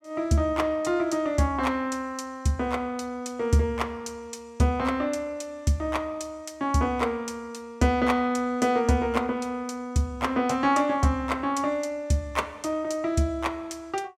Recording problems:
none

